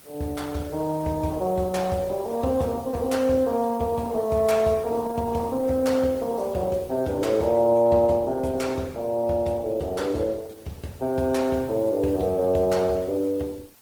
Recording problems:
lossy compression; Opus, then Opus, log-spectral distance 4 dB, nothing above 19 kHz
hiss; slope -3 dB per octave, SNR 25 dB

